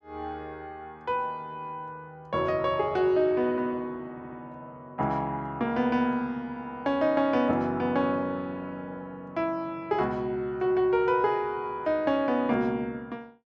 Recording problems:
audio stuttering; at 4 s

